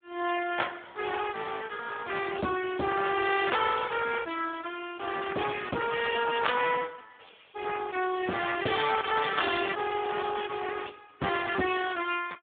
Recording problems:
phone line; 220 Hz to 3.5 kHz, Speex

